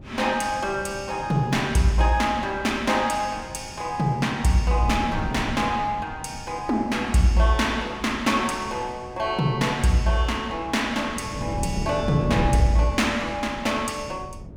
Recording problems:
wind noise; below 240 Hz, SNR 11 dB

